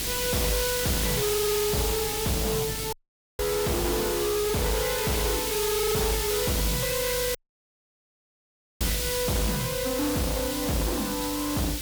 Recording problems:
distortion; soft clipping, signal-to-distortion ratio 7 dB
electrical hum; 50 Hz, harmonics up to 350 Hz, SNR 15 dB
hiss; slope +5 dB per octave, SNR 1 dB
wind noise; below 510 Hz, SNR 17 dB
dropout; at 3 s and at 7.5 s for 1.5 s

